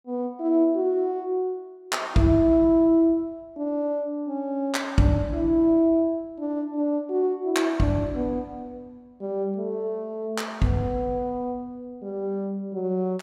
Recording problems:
none

